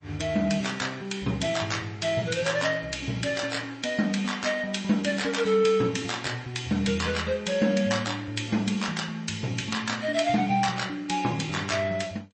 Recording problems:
lossy compression; MP3, log-spectral distance 4 dB, nothing above 8.2 kHz

